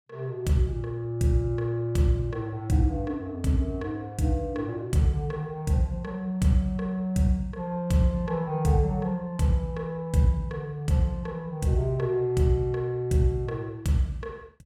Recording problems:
none

